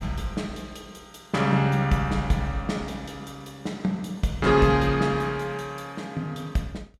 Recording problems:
none

